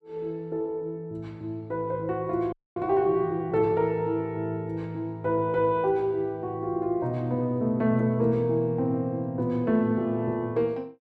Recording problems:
audio freezing; at 2.5 s

